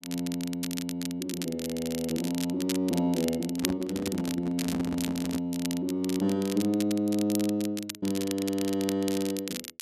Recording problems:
crackle; vinyl, SNR 9 dB
handling noise; from 3.5 to 5.5 s; peak +1 dB vs average level

